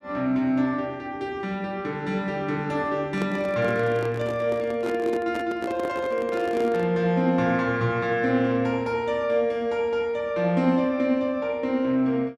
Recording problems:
microphone handling noise; from 3 to 7 s; peak -2 dB vs average level

